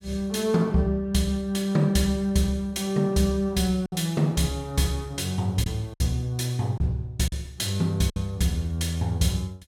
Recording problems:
packet loss; 3% of the sound replaced, filled with silence

